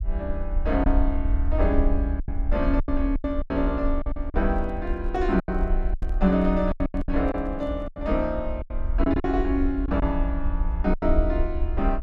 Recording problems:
rumble; below 58 Hz, SNR 2 dB
lost packets; 10% of the sound replaced, filled with silence
handling noise; from 4.5 to 8 s; peak -11 dB vs average level

